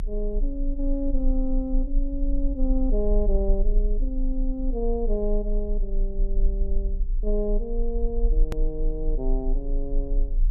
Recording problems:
electrical hum; 60 Hz, harmonics up to 420 Hz, SNR 19 dB
rumble; below 34 Hz, strongest tone 30 Hz, SNR -2 dB
click at an edit; at 8.5 s

